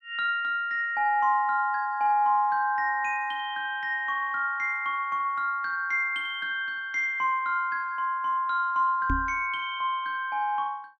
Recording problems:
microphone bump; at 9 s; peak 0 dB vs average level

